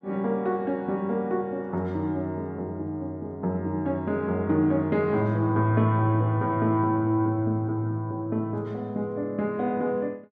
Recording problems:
none

